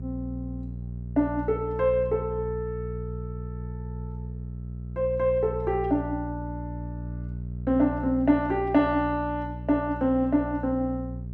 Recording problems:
hum; 60 Hz, harmonics up to 420 Hz, SNR 9 dB

